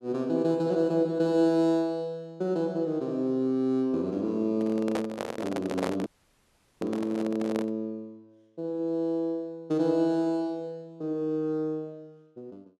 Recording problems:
handling noise; from 4.5 to 7.5 s; peak +2 dB vs average level
dropout; at 6 s for 1 s

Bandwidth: 12.5 kHz